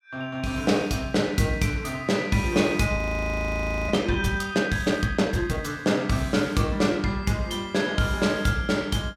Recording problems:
frozen audio; at 3 s for 1 s

